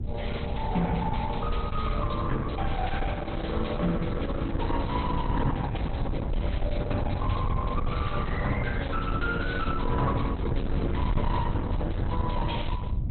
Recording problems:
lossy compression; Opus, log-spectral distance 5 dB, nothing above 4.1 kHz
distorted audio; soft clipping, signal-to-distortion ratio 10 dB
low-frequency rumble; below 110 Hz, SNR 0 dB

